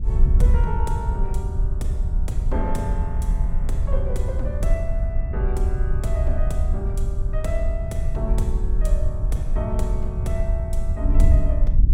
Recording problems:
wind noise; below 66 Hz, SNR -7 dB

